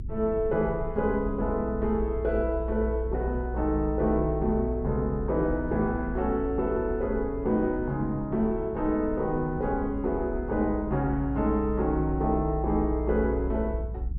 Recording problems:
low-frequency rumble; below 62 Hz, strongest tone 58 Hz, SNR 7 dB

